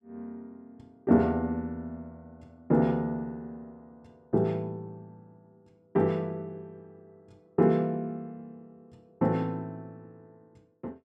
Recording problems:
none

